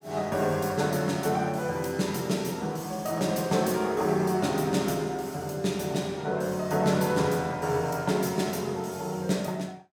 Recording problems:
none

